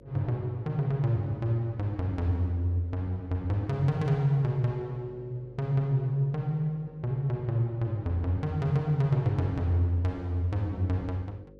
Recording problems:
hum; 50 Hz, harmonics up to 550 Hz, SNR 24 dB

